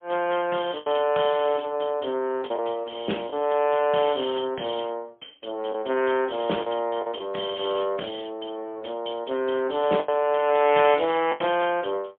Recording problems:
telephone audio; 220 Hz to 3.4 kHz, AMR-NB, then MP3
packet loss; 4% of the sound replaced, filled with the last packet

